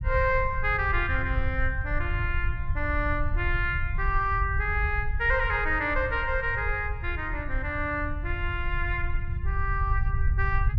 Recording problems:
low-frequency rumble; below 80 Hz, SNR 3 dB

